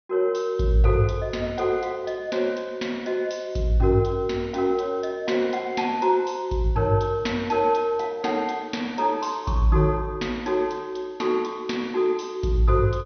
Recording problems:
low-pass filter; nothing above 6.1 kHz

